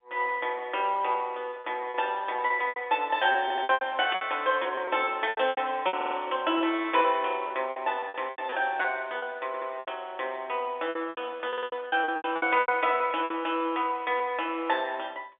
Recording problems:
phone line; 190 Hz to 3.6 kHz, G.711
packet loss; 13% of the sound replaced, filled with repeated pitch periods
audio stuttering; 4 times, first at 3.5 s
burst of static; at 4 s; peak -2 dB vs average level

